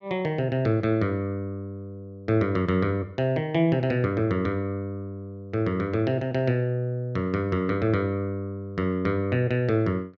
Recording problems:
none

